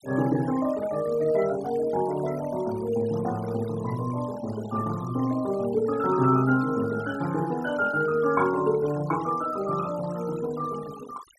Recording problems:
noise reduction artefacts; signal-to-artefact ratio 18 dB

